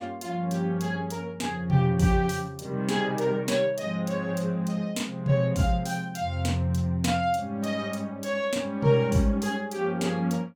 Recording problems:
none

